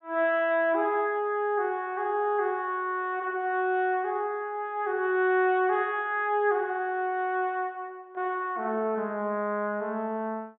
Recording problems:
treble missing; nothing above 3.8 kHz

